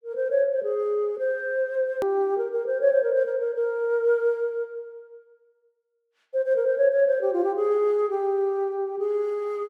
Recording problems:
hard cut with a click; at 2 s

